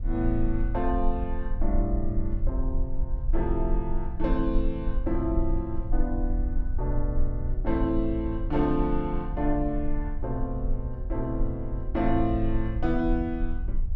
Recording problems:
rumble; below 48 Hz, strongest tone 20 Hz, SNR 2 dB

